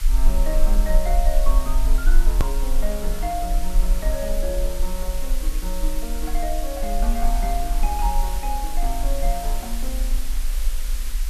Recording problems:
background hiss; slope +2 dB per octave, SNR 6 dB
low-frequency rumble; below 38 Hz, strongest tone 20 Hz, SNR -5 dB
edit click; at 2.5 s

